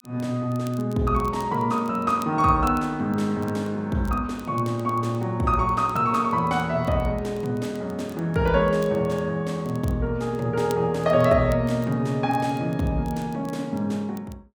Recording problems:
crackle; vinyl, SNR 26 dB

